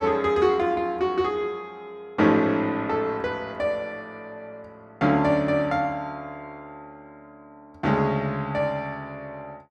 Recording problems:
none

